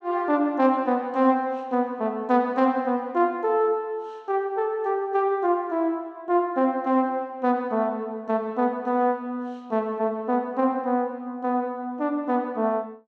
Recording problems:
none

